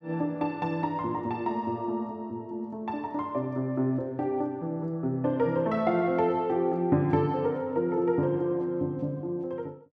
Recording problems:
none

